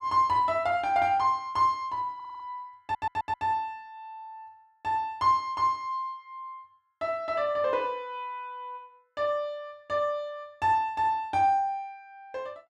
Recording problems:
stutter; at 2 s and at 3 s

